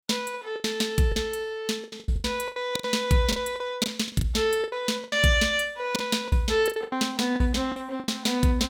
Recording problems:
lost packets; 15% of the sound replaced, filled with the last packet

